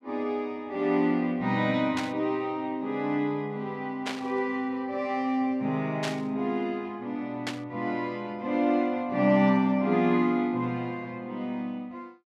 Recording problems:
burst of static; 4 times, first at 2 s; peak -1 dB vs average level

